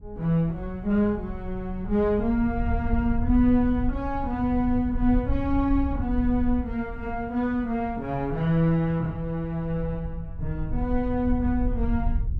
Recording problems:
rumble; below 78 Hz, SNR 8 dB

